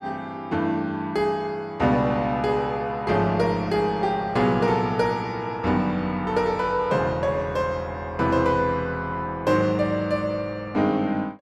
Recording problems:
none

